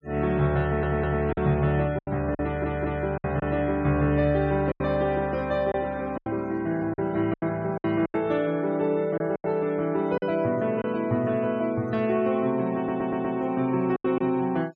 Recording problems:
noise reduction artefacts; signal-to-artefact ratio 24 dB
lost packets; 7% of the sound replaced, filled with silence
stutter; at 0.5 s, at 2.5 s and at 13 s

